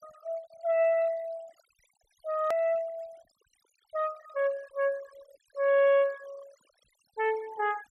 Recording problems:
denoising artefacts; signal-to-artefact ratio 24 dB
hard cut with a click; at 2.5 s

